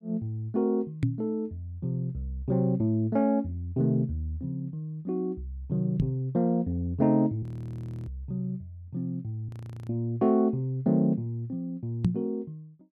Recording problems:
knock on the microphone; at 1 s, at 6 s and at 12 s; peak +8 dB vs average level
audio freezing; at 7.5 s for 0.5 s and at 9.5 s

